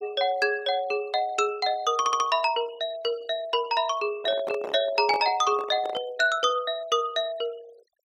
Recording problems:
denoising artefacts; signal-to-artefact ratio 22 dB
audio stuttering; at 2 s
microphone handling noise; from 4 to 6 s; peak -4 dB vs average level

